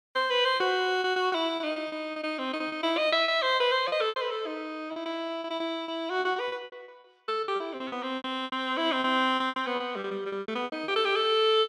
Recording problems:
lost packets; 16% of the sound replaced, filled with repeated pitch periods

